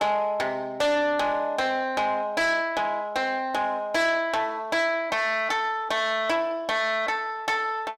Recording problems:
distortion; soft clipping, signal-to-distortion ratio 11 dB

